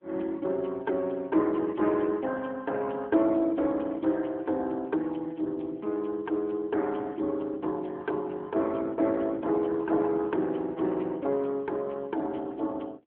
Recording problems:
phone line; 220 Hz to 3.6 kHz, AMR-NB

